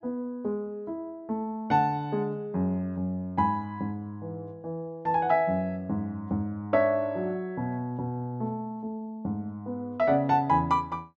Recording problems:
none

